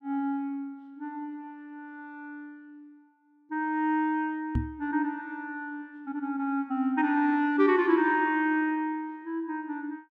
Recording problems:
microphone bump; at 4.5 s; peak +4 dB vs average level

